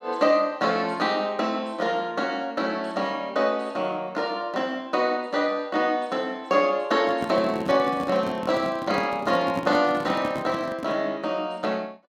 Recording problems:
handling noise; from 7 to 11 s; peak -2 dB vs average level

